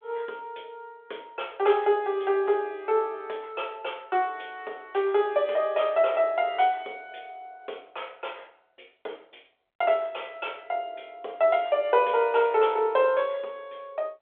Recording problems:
phone line; 340 Hz to 3.5 kHz, G.726

